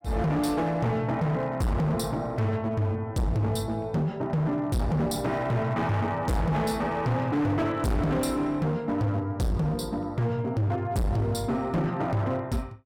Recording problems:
distortion; hard clipping, signal-to-distortion ratio 6 dB

